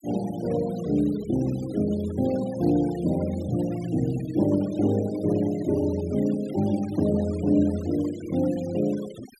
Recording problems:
denoising artefacts; signal-to-artefact ratio 20 dB

